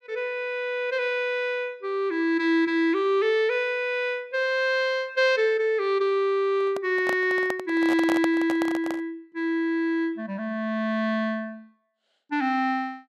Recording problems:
microphone handling noise; from 6.5 to 9 s; peak -1 dB vs average level

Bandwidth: 14.5 kHz